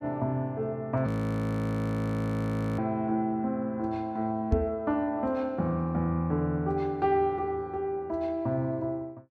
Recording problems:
audio freezing; at 1 s for 1.5 s
knock on the microphone; at 4.5 s; peak +8 dB vs average level

